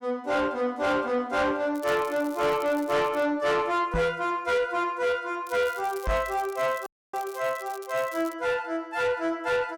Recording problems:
distorted audio; soft clipping, signal-to-distortion ratio 11 dB
crackling; from 1.5 to 3 s and from 5.5 to 8.5 s; loose cable, SNR 20 dB
microphone thump; at 4 s and at 6 s; peak +1 dB vs average level
dropout; at 7 s

